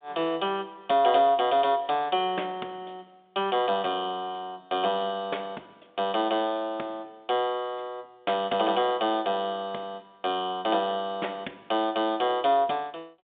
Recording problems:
telephone audio; 240 Hz to 3.7 kHz, G.726

